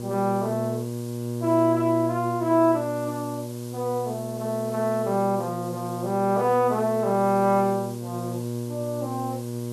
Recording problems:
electrical hum; 60 Hz, harmonics up to 960 Hz, SNR 8 dB
hiss; SNR 21 dB

